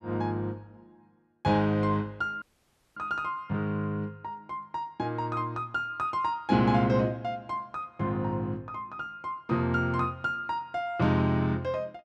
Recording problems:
audio cutting out; at 2.5 s for 0.5 s

